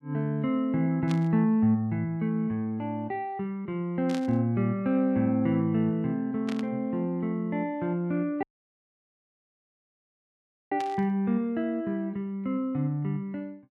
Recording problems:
burst of static; 4 times, first at 1 s; peak -7 dB vs average level
audio cutting out; at 8.5 s for 2.5 s

